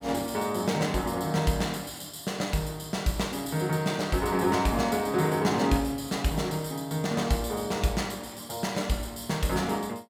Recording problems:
none

